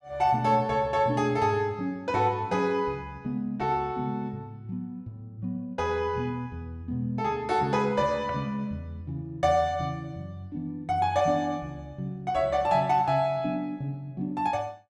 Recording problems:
none

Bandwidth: 12.5 kHz